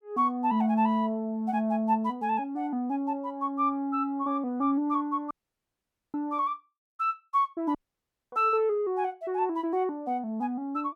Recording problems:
dropout; at 5.5 s for 1 s and at 8 s for 0.5 s

